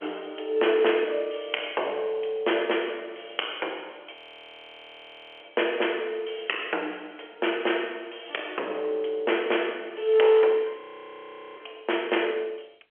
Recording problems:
phone line; 300 Hz to 3.3 kHz, G.711
distortion; hard clipping, uneven, signal-to-distortion ratio 13 dB
audio freezing; at 4 s for 1.5 s and at 11 s for 1 s

